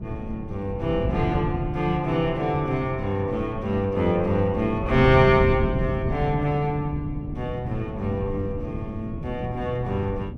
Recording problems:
wind on the microphone; below 200 Hz, SNR 6 dB

